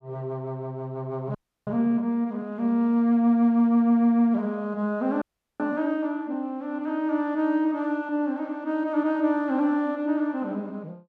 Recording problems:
audio freezing; at 1.5 s and at 5 s

